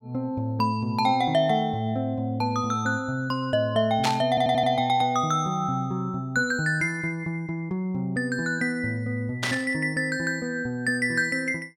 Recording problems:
static burst; at 4 s and at 9.5 s; peak +2 dB vs average level
stutter; at 4.5 s

